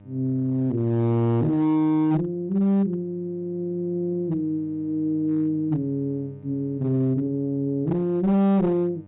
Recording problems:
treble missing; nothing above 3.8 kHz
distorted audio; hard clipping, uneven, signal-to-distortion ratio 11 dB
hum; 50 Hz, harmonics up to 900 Hz, SNR 25 dB

